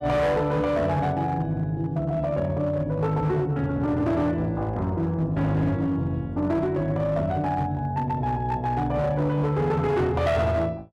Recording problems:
distorted audio; hard clipping, signal-to-distortion ratio 11 dB

